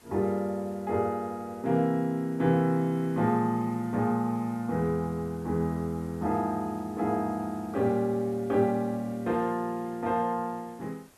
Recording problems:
background hiss; slope -3 dB per octave, SNR 27 dB

